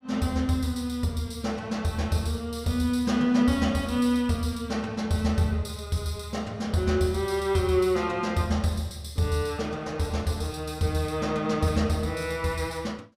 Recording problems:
none

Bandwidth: 15.5 kHz